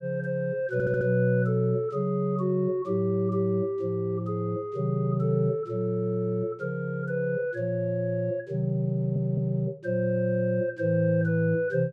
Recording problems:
audio stuttering; at 0.5 s and at 9 s

